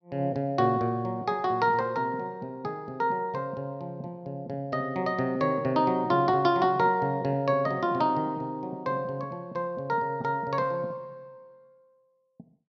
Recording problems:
none

